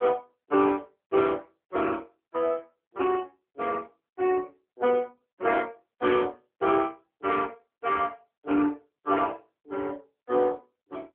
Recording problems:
telephone audio; 260 Hz to 3.2 kHz, AMR-NB

